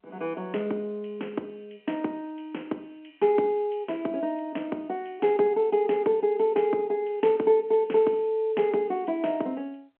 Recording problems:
phone line; 220 Hz to 3.2 kHz, G.711

